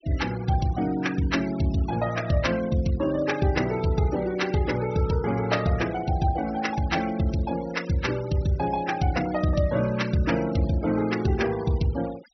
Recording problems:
treble cut off; nothing above 5.9 kHz
denoising artefacts; signal-to-artefact ratio 16 dB

